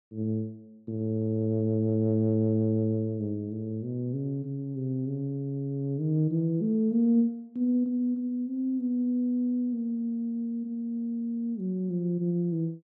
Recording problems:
none

